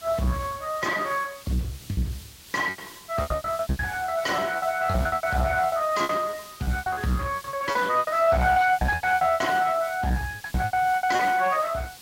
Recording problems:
codec artefacts; Speex, log-spectral distance 3 dB
distortion; soft clipping, signal-to-distortion ratio 9 dB
background hiss; slope +1 dB per octave, SNR 19 dB
packet loss; 21% of the sound replaced, filled with repeated pitch periods

